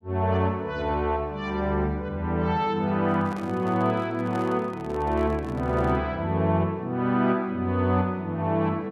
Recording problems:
microphone handling noise; from 3 to 6 s; peak -9 dB vs average level

